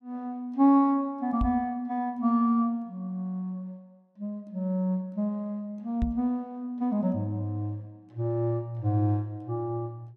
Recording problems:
microphone thump; at 1.5 s and at 6 s; peak +3 dB vs average level

